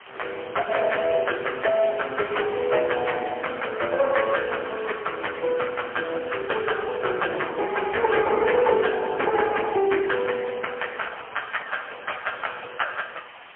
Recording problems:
phone line; 280 Hz to 3.2 kHz, AMR-NB, then MP3
hiss; SNR 19 dB
crackling; from 2.5 to 3.5 s and from 11 to 12 s; loose cable, SNR 29 dB

